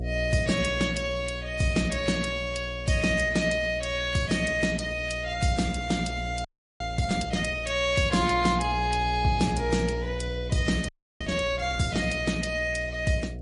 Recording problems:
lossy compression; MP3, then Vorbis, log-spectral distance 4 dB, nothing above 10.4 kHz
electrical hum; 60 Hz, harmonics up to 720 Hz, SNR 9 dB
audio freezing; at 6.5 s and at 11 s

